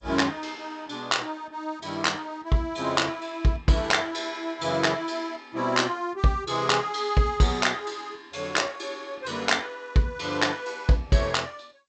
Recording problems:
lossy compression; G.722, log-spectral distance 3 dB, nothing above 8 kHz

